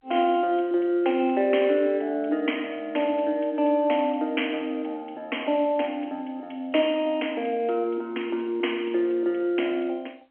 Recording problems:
phone line; 260 Hz to 3.3 kHz, G.711

